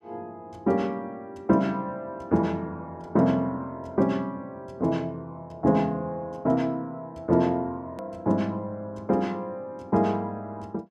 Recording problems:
edit click; at 8 s

